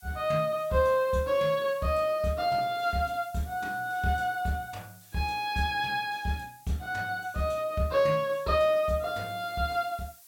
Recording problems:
hiss; slope +3 dB per octave, SNR 24 dB

